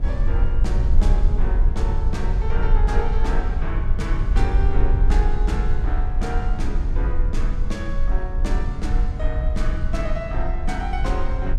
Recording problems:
rumble; below 52 Hz, SNR -7 dB

